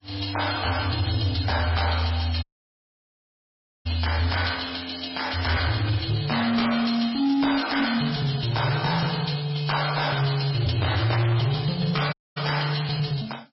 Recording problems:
lossy codec; MP3, log-spectral distance 10 dB, nothing above 5.5 kHz
distorted audio; hard clipping, signal-to-distortion ratio 11 dB
audio cutting out; at 2.5 s for 1.5 s and at 12 s

